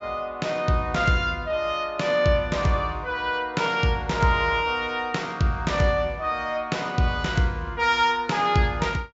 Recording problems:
low-pass filter; nothing above 8 kHz

